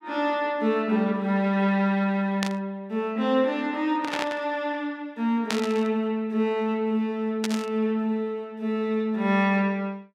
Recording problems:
static burst; 4 times, first at 2.5 s; peak +1 dB vs average level

